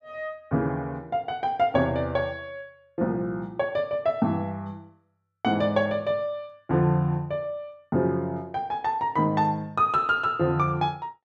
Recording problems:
none

